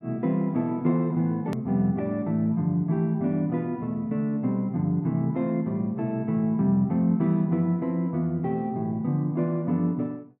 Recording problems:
click at an edit; at 1.5 s

